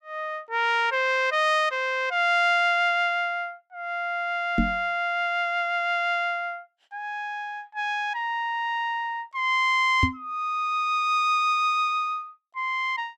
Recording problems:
microphone thump; at 4.5 s and at 10 s; peak +4 dB vs average level

